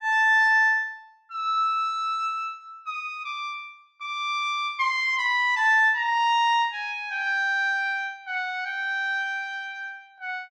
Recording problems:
none

